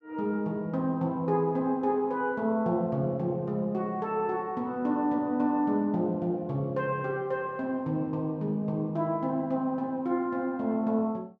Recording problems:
none

